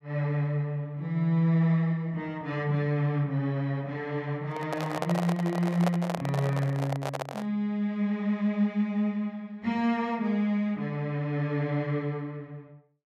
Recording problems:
microphone handling noise; from 4.5 to 7.5 s; peak +3 dB vs average level

